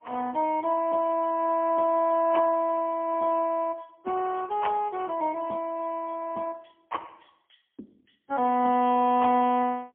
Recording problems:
phone line; 190 Hz to 3.2 kHz, AMR-NB, then MP3

